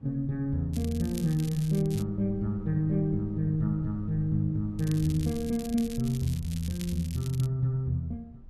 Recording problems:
rumble; below 92 Hz, SNR 18 dB
crackling; from 0.5 to 2 s and from 5 to 7.5 s; loose cable, SNR 17 dB

